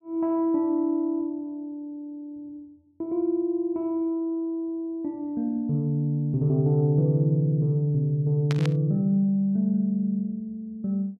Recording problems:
burst of static; at 8.5 s; peak -5 dB vs average level

